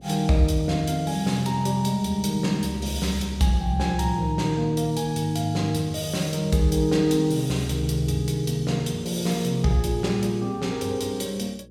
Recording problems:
electrical hum; 60 Hz, harmonics up to 540 Hz, SNR 26 dB

